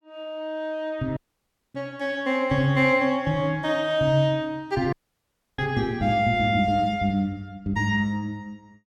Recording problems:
audio cutting out; at 1 s for 0.5 s and at 5 s for 0.5 s

